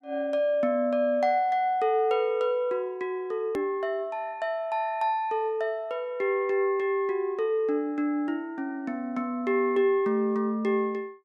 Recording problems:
click at an edit; at 3.5 s

